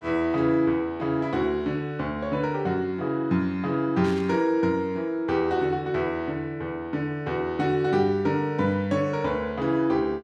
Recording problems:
static burst; at 4 s; peak -12 dB vs average level

